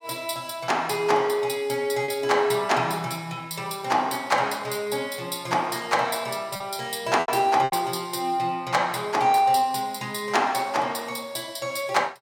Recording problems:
lost packets; 2% of the sound replaced, filled with repeated pitch periods

